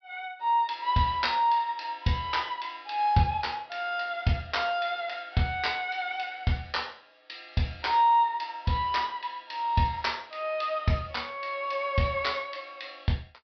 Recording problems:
treble cut off; nothing above 5.5 kHz

